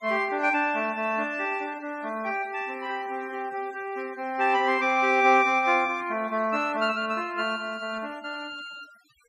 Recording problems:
denoising artefacts; signal-to-artefact ratio 24 dB

